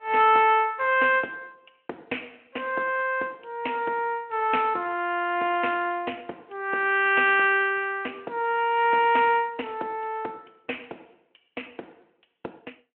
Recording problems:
phone line; 320 Hz to 3.2 kHz, Speex

